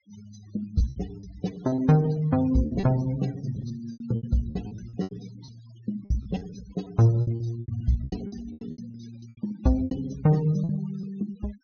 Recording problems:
treble cut off; nothing above 6.6 kHz
denoising artefacts; signal-to-artefact ratio 19 dB
packet loss; 14% of the sound replaced, filled with repeated pitch periods

